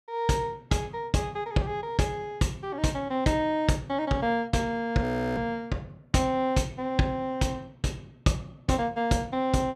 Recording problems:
audio freezing; at 5 s

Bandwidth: 13.5 kHz